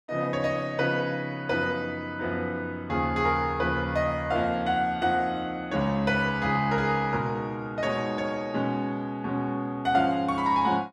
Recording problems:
none

